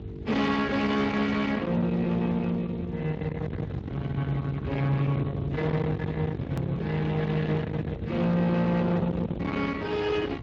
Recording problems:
lossy codec; AAC, then Speex, log-spectral distance 3 dB, nothing above 17.7 kHz
distortion; soft clipping, signal-to-distortion ratio 7 dB
hum; 50 Hz, harmonics up to 450 Hz, SNR 16 dB
rumble; below 470 Hz, SNR 8 dB
hard cut with a click; at 6.5 s

